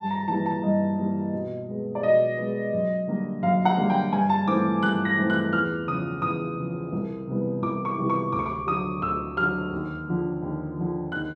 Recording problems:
none

